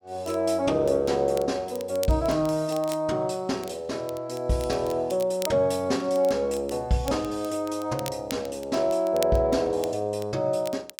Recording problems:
crackling; vinyl, SNR 18 dB

